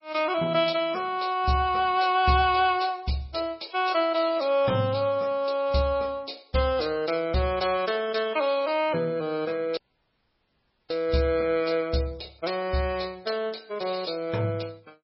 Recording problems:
codec artefacts; MP3, log-spectral distance 5 dB, nothing above 5.5 kHz
audio cutting out; at 10 s for 1 s

